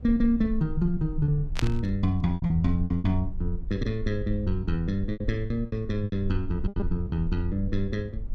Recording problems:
rumble; below 52 Hz, strongest tone 18 Hz, SNR 8 dB
lost packets; 8% of the sound replaced, filled with repeated pitch periods
burst of static; at 1.5 s; peak +1 dB vs average level

